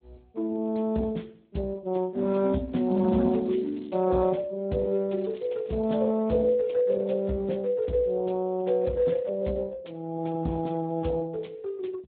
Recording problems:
treble cut off; nothing above 3.9 kHz
lossy codec; Speex, log-spectral distance 3 dB
crackling; from 2.5 to 4 s and at 5 s; loose cable, SNR 29 dB

